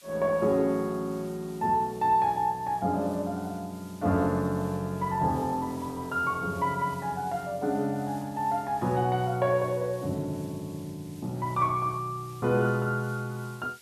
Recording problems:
hiss; slope +2 dB per octave, SNR 23 dB

